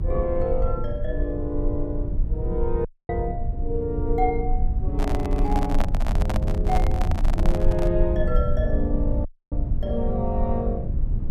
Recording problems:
low-frequency rumble; below 66 Hz, strongest tone 22 Hz, SNR -2 dB
audio cutting out; at 3 s and at 9.5 s
handling noise; from 5 to 8 s; peak +3 dB vs average level

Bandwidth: 14.5 kHz